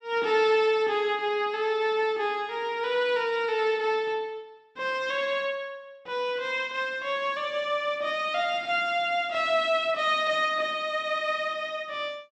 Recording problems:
none

